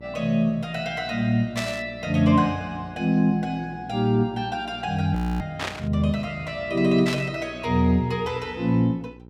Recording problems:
mains hum; 60 Hz, harmonics up to 960 Hz, SNR 20 dB
burst of static; at 1.5 s, at 5.5 s and at 7 s; peak -2 dB vs average level
frozen audio; at 5 s

